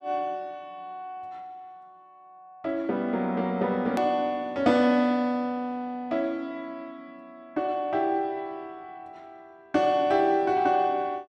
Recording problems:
edit click; at 4 s

